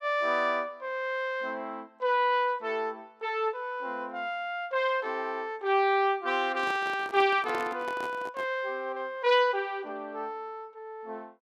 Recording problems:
handling noise; from 6.5 to 8.5 s; peak -6 dB vs average level

